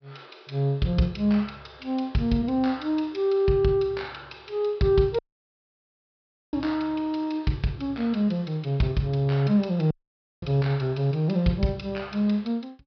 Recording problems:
treble missing; nothing above 5.5 kHz
audio cutting out; at 5 s for 1.5 s and at 10 s for 0.5 s

